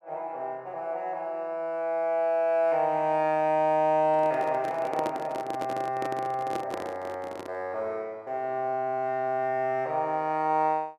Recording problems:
handling noise; from 4 to 7.5 s; peak -2 dB vs average level

